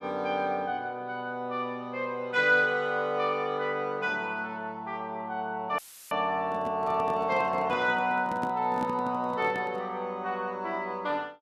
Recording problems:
dropout; at 6 s; filled with static
handling noise; from 6.5 to 10 s; peak -2 dB vs average level

